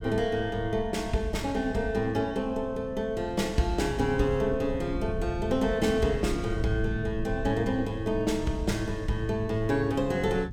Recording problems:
rumble; below 110 Hz, SNR 11 dB

